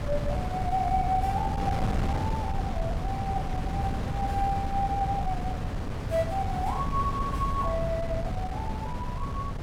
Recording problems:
wind noise; below 210 Hz, SNR 0 dB

